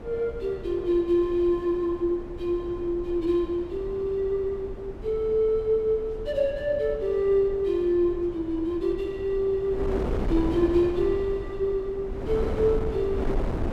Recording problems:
wind on the microphone; below 390 Hz, SNR 10 dB

